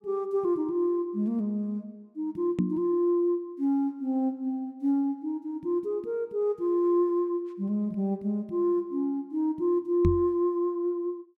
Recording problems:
microphone bump; at 2.5 s and at 10 s; peak +6 dB vs average level

